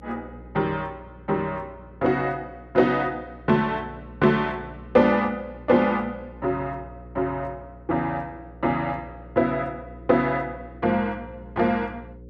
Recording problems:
hum; 60 Hz, harmonics up to 540 Hz, SNR 20 dB

